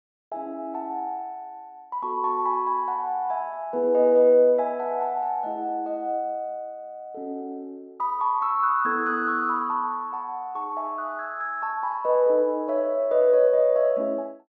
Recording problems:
treble cut off; nothing above 7.4 kHz

